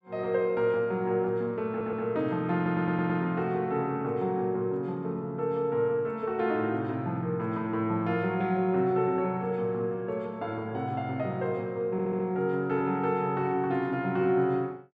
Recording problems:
stutter; at 1.5 s, at 2.5 s and at 12 s

